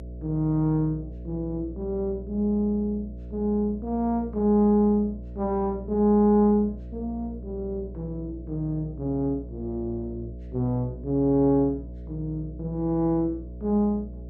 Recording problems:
hum; 60 Hz, harmonics up to 660 Hz, SNR 13 dB

